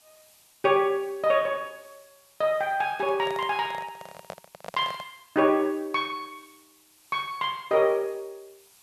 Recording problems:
background hiss; SNR 29 dB
handling noise; from 3 to 5 s; peak -7 dB vs average level

